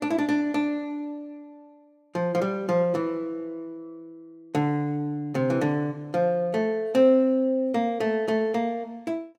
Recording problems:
none

